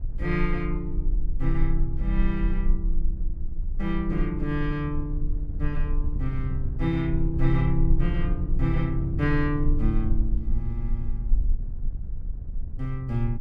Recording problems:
low-frequency rumble; below 40 Hz, strongest tone 22 Hz, SNR 3 dB
wind on the microphone; below 94 Hz, SNR 6 dB

